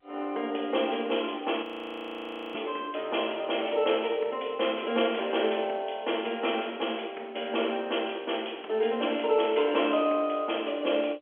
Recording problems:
telephone audio; 300 Hz to 3.3 kHz, G.711
audio freezing; at 1.5 s for 1 s

